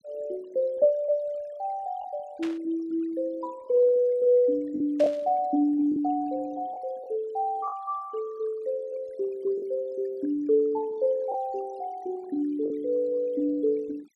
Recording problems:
denoising artefacts; signal-to-artefact ratio 24 dB
lost packets; 2% of the sound replaced, filled with the last packet
static burst; at 2.5 s and at 5 s; peak -8 dB vs average level

